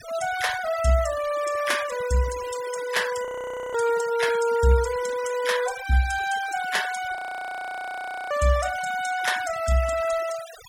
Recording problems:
denoising artefacts; signal-to-artefact ratio 13 dB
audio freezing; at 3.5 s and at 7 s for 1 s

